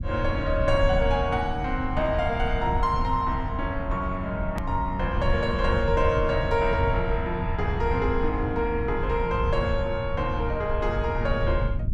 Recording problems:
rumble; below 98 Hz, SNR 4 dB
edit click; at 4.5 s

